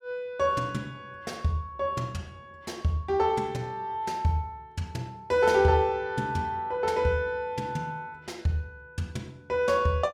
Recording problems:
none

